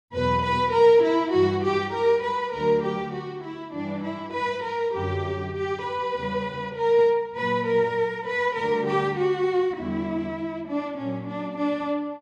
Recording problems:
none

